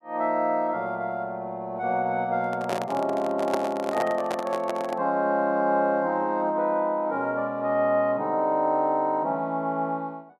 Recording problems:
microphone handling noise; from 2.5 to 5 s; peak +2 dB vs average level

